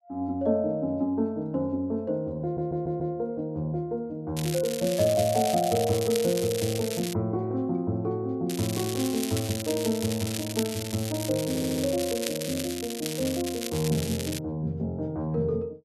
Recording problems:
audio stuttering; at 2.5 s and at 11 s
crackling; from 4.5 to 7 s and from 8.5 to 14 s; loose cable, SNR 7 dB

